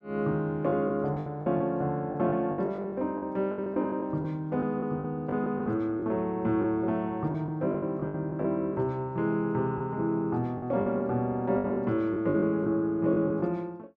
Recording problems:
lost packets; 10% of the sound replaced, filled with the last packet

